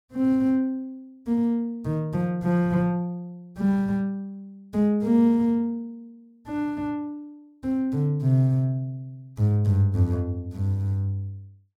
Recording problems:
none

